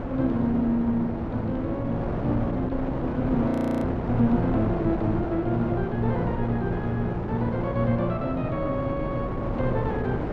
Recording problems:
wind noise; below 550 Hz, SNR 4 dB
audio freezing; at 3.5 s

